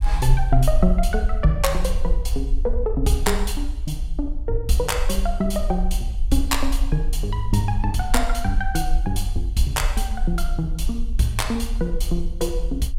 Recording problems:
rumble; below 48 Hz, strongest tone 22 Hz, SNR 2 dB

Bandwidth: 16 kHz